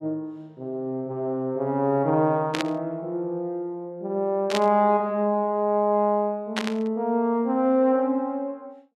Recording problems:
static burst; at 2.5 s, at 4.5 s and at 6.5 s; peak +1 dB vs average level

